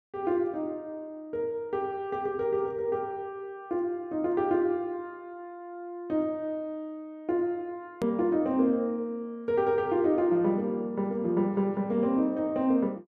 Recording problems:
click at an edit; at 8 s

